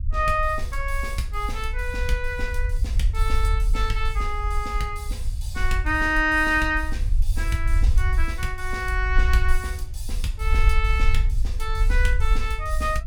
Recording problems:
rumble; below 56 Hz, SNR 0 dB

